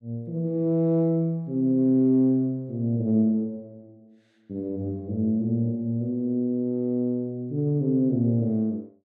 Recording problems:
none

